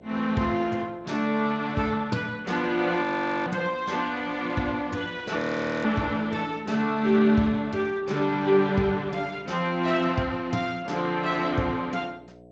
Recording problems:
lossy compression; Speex, then MP2, log-spectral distance 3 dB
hum; 60 Hz, harmonics up to 720 Hz, SNR 24 dB
audio freezing; at 3 s and at 5.5 s

